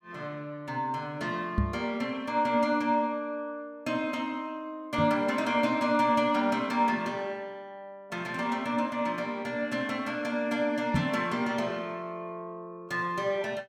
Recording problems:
knock on the microphone; at 1.5 s, at 5 s and at 11 s; peak +6 dB vs average level

